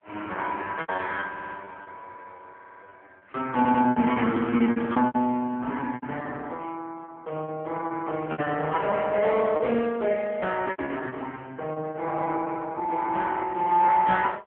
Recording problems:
telephone audio; 190 Hz to 3.4 kHz, AMR-NB
lost packets; 12% of the sound replaced, filled with repeated pitch periods
stutter; at 1.5 s, at 2.5 s and at 3.5 s

